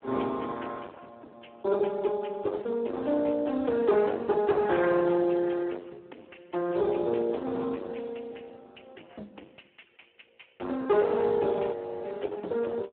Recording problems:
telephone audio; 260 Hz to 3 kHz, Speex
distorted audio; hard clipping, signal-to-distortion ratio 10 dB
frozen audio; at 12 s

